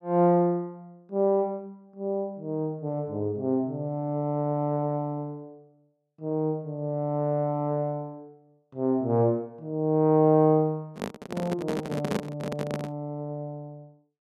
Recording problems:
microphone handling noise; from 11 to 13 s; peak +2 dB vs average level

